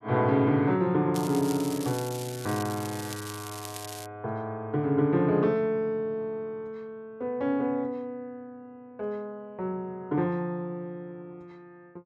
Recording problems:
crackling; from 1 to 4 s; loose cable, SNR 12 dB

